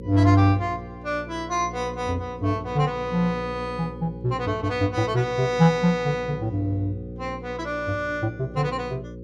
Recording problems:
mains hum; 60 Hz, harmonics up to 540 Hz, SNR 13 dB

